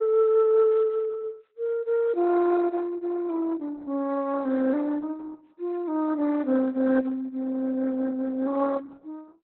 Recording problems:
lossy codec; Opus, log-spectral distance 2 dB, nothing above 4.1 kHz

